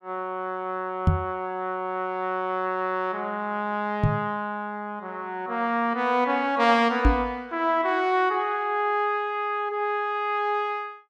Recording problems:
knock on the microphone; at 1 s, at 4 s and at 7 s; peak +9 dB vs average level

